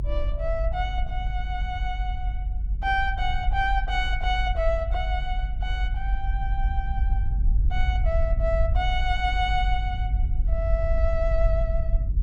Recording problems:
low-frequency rumble; below 54 Hz, SNR -2 dB

